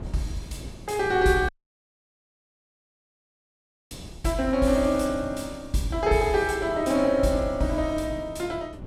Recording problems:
wind on the microphone; below 280 Hz, SNR 18 dB
dropout; at 1.5 s for 2.5 s

